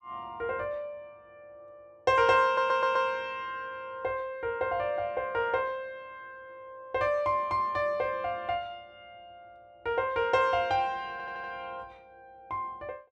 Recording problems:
audio stuttering; at 2.5 s and at 11 s

